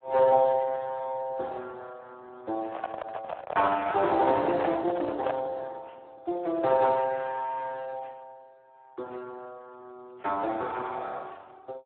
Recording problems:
phone line; 300 Hz to 2 kHz, Speex
microphone handling noise; from 2.5 to 5.5 s; peak +3 dB vs average level

